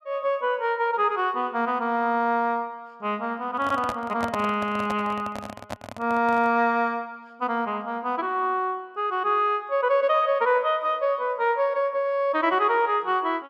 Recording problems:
handling noise; from 3.5 to 6.5 s; peak -2 dB vs average level

